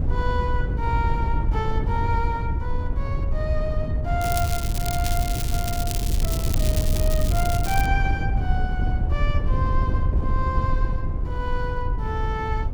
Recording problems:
wind noise; below 92 Hz, SNR -5 dB
crackle; from 4 to 8 s; loose cable, SNR 2 dB

